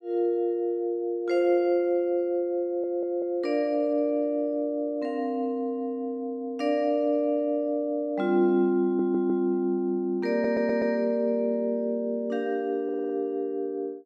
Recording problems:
stutter; 4 times, first at 2.5 s

